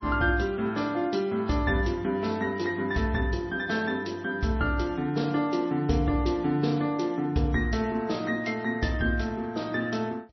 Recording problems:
lossy codec; MP3, log-spectral distance 2 dB, nothing above 5.8 kHz

